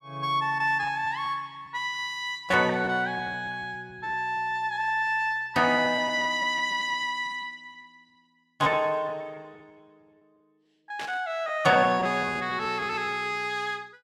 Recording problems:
packet loss; 8% of the sound replaced, filled with repeated pitch periods
burst of static; at 11 s; peak -7 dB vs average level

